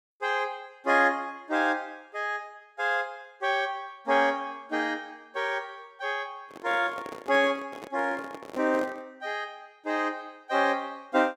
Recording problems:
handling noise; from 6.5 to 9 s; peak -7 dB vs average level

